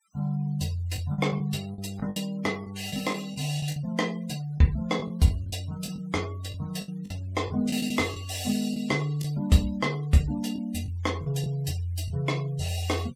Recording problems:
noise reduction artefacts; signal-to-artefact ratio 20 dB
lost packets; 7% of the sound replaced, filled with the last packet

